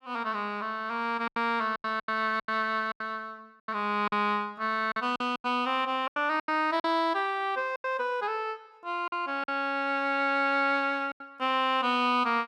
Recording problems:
packet loss; 9% of the sound replaced, filled with silence

